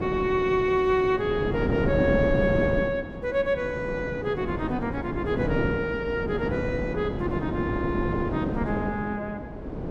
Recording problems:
wind on the microphone; below 420 Hz, SNR 3 dB

